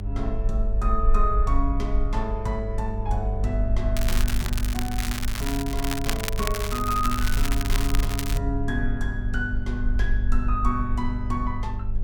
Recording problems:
hum; 50 Hz, harmonics up to 600 Hz, SNR 5 dB
low-frequency rumble; below 50 Hz, SNR -1 dB
crackle; from 4 to 8.5 s; loose cable, SNR 2 dB

